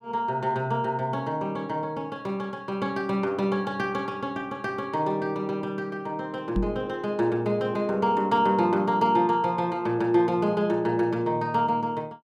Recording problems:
microphone thump; at 6.5 s; peak +2 dB vs average level

